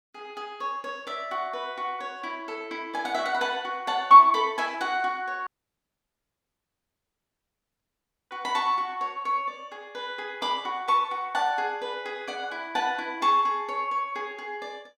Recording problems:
dropout; at 5.5 s for 3 s

